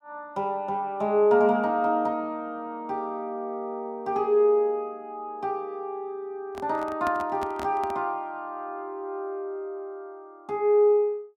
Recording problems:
handling noise; from 6.5 to 8 s; peak -4 dB vs average level

